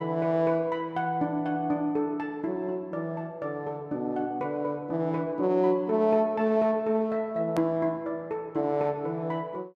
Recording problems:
hard cut with a click; at 7.5 s

